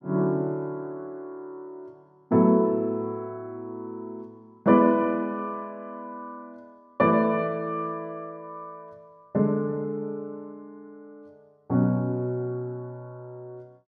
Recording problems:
none

